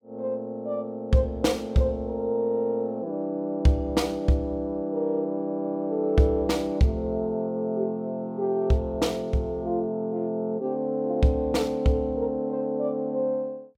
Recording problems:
none

